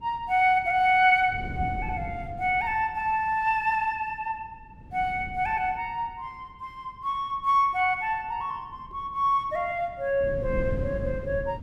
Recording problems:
wind on the microphone; below 200 Hz, SNR 12 dB

